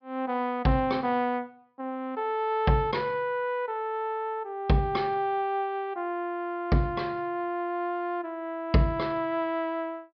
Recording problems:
treble cut off; nothing above 5.5 kHz

